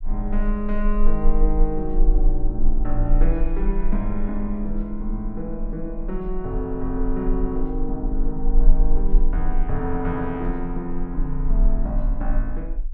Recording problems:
rumble; below 32 Hz, strongest tone 20 Hz, SNR -2 dB

